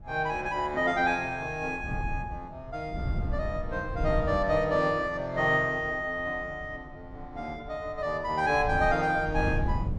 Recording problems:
wind noise; below 130 Hz, SNR 8 dB

